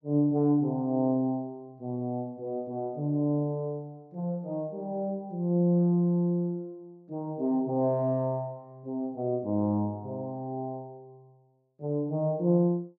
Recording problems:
none

